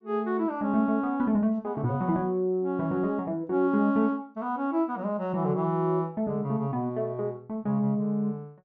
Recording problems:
treble missing; nothing above 8 kHz

